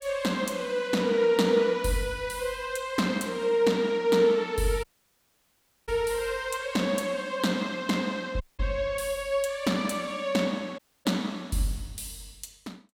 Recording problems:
dropout; at 5 s for 1 s, at 8.5 s and at 11 s

